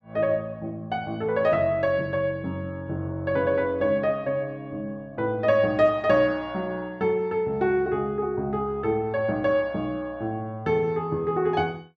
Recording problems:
none

